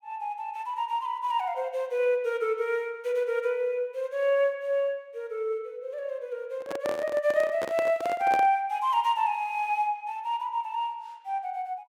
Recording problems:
handling noise; from 6.5 to 8.5 s; peak -1 dB vs average level

